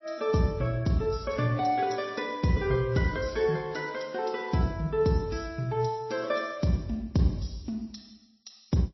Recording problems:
codec artefacts; MP3, then MP3, log-spectral distance 6 dB, nothing above 5.7 kHz

